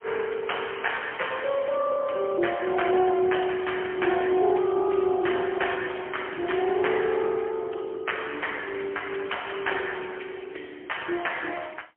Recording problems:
telephone audio; 280 Hz to 3.2 kHz, AMR-NB, then MP3

